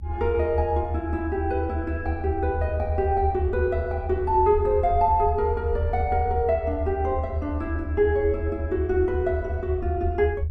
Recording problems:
low-frequency rumble; below 82 Hz, strongest tone 80 Hz, SNR 5 dB

